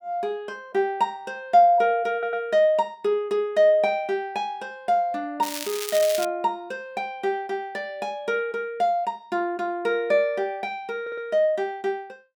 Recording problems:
stutter; at 2 s and at 11 s
crackling; at 5.5 s; loose cable, SNR 8 dB

